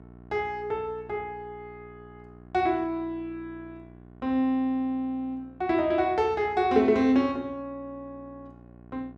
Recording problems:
hum; 60 Hz, harmonics up to 1.5 kHz, SNR 23 dB

